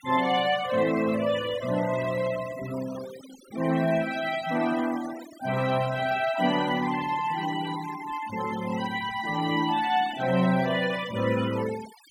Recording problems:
denoising artefacts; signal-to-artefact ratio 14 dB

